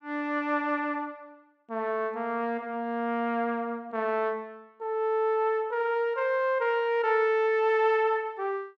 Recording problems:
none

